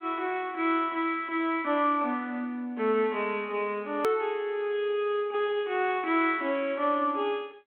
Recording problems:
telephone audio; 240 Hz to 3.3 kHz, G.726
edit click; at 4 s

